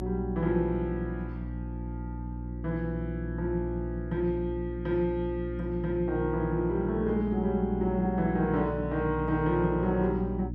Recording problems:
hum; 60 Hz, harmonics up to 300 Hz, SNR 6 dB

